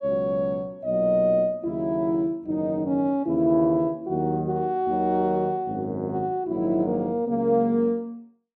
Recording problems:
none

